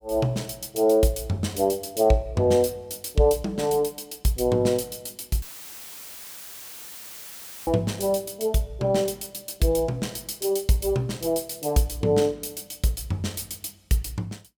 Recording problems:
dropout; at 5.5 s for 2.5 s; filled with static

